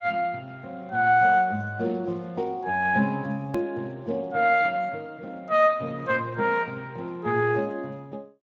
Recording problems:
lossy codec; Speex, log-spectral distance 3 dB
hard cut with a click; at 3.5 s

